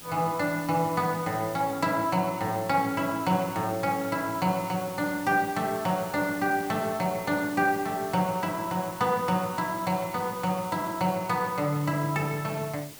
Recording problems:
background hiss; slope -1 dB per octave, SNR 15 dB

